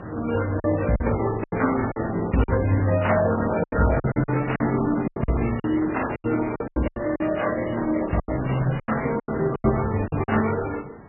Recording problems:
lossy compression; Opus, then MP3, log-spectral distance 5 dB, nothing above 2.8 kHz
wind on the microphone; below 810 Hz, SNR 14 dB
packet loss; 13% of the sound replaced, filled with silence

